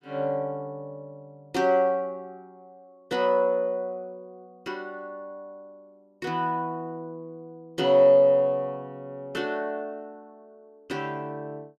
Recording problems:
none

